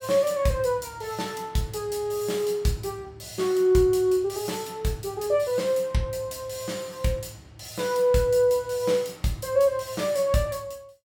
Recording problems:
none

